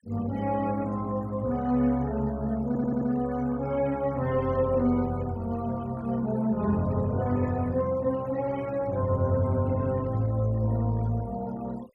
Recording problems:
denoising artefacts; signal-to-artefact ratio 24 dB
stutter; at 2.5 s

